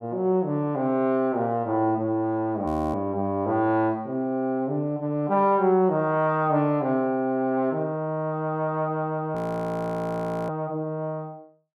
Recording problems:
frozen audio; at 2.5 s and at 9.5 s for 1 s

